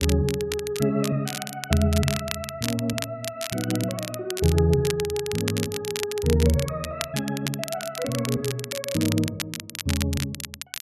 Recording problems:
crackling; vinyl, SNR 7 dB

